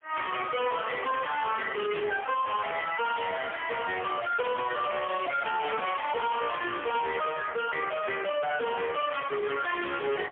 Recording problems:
phone line; 340 Hz to 3 kHz, AMR-NB, then MP3
distortion; hard clipping, uneven, signal-to-distortion ratio 5 dB

